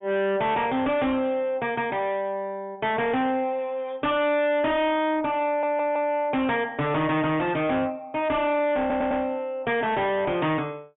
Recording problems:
treble missing; nothing above 3.5 kHz
distortion; soft clipping, signal-to-distortion ratio 6 dB
audio stuttering; at 5.5 s and at 9 s

